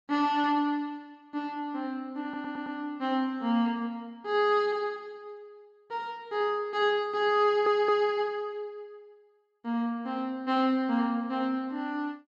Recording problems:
stutter; at 2 s and at 7.5 s

